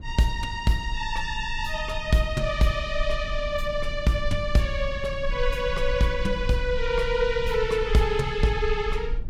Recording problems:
rumble; below 50 Hz, strongest tone 18 Hz, SNR 9 dB

